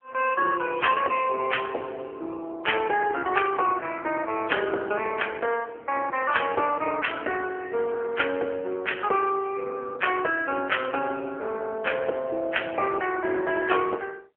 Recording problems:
telephone audio; 300 Hz to 3.2 kHz, AMR-NB

